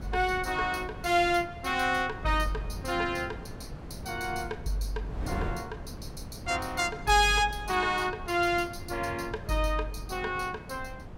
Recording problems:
wind noise; below 280 Hz, SNR 13 dB

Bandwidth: 16.5 kHz